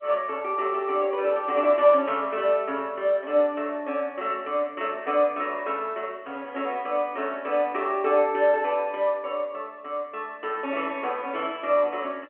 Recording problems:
phone line; 280 Hz to 3.3 kHz, G.711

